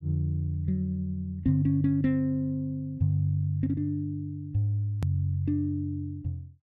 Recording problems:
hard cut with a click; at 5 s

